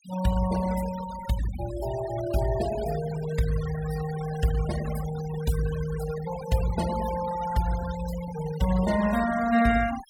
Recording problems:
noise reduction artefacts; signal-to-artefact ratio 12 dB

